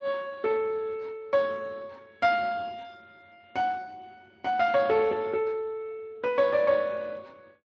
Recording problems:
lossy compression; MP3, then Speex, log-spectral distance 3 dB

